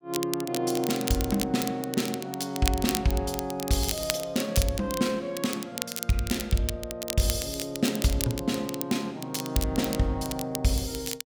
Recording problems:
crackle; vinyl, SNR 6 dB

